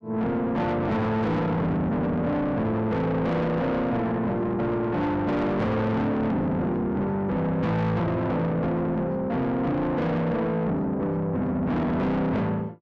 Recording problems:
distortion; soft clipping, signal-to-distortion ratio 6 dB

